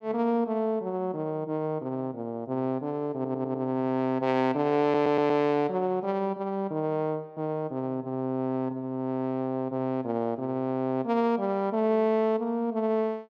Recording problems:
audio stuttering; at 3 s and at 5 s

